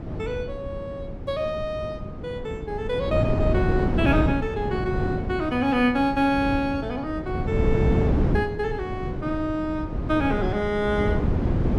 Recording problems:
wind on the microphone; below 280 Hz, SNR 2 dB

